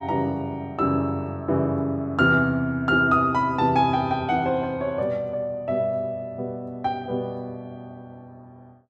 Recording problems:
none

